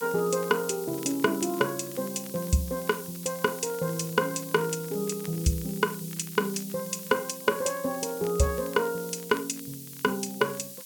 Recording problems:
hiss; SNR 11 dB
crackle; vinyl, SNR 24 dB

